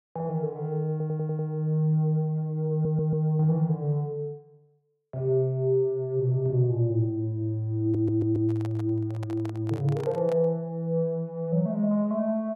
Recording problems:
stutter; at 1 s, at 2.5 s and at 8 s
handling noise; from 8 to 10 s; peak -10 dB vs average level

